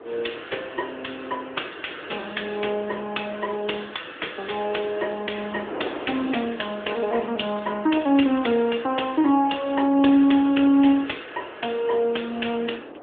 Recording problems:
phone line; 240 Hz to 3.5 kHz, AMR-NB
wind on the microphone; below 740 Hz, SNR 17 dB

